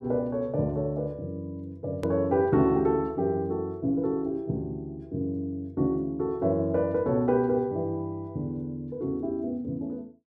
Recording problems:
edit click; at 2 s

